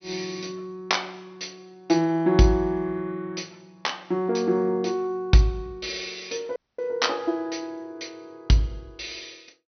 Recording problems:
treble missing; nothing above 6 kHz
audio cutting out; at 6.5 s

